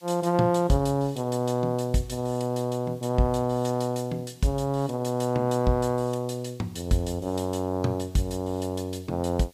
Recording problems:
hiss; SNR 29 dB

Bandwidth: 15 kHz